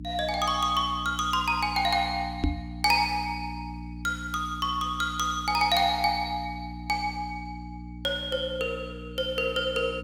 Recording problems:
hum; 60 Hz, harmonics up to 300 Hz, SNR 12 dB
microphone bump; at 2.5 s; peak +5 dB vs average level

